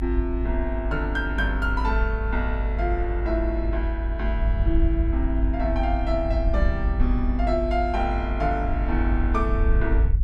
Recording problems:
rumble; below 54 Hz, strongest tone 50 Hz, SNR -1 dB

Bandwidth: 14 kHz